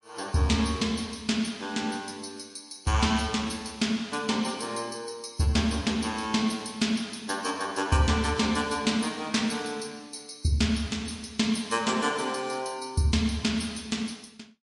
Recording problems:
lossy compression; MP3, log-spectral distance 4 dB, nothing above 11 kHz

